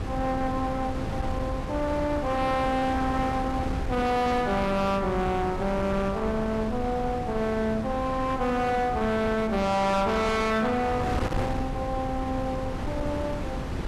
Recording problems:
distorted audio; hard clipping, signal-to-distortion ratio 6 dB
wind noise; below 460 Hz, SNR 6 dB

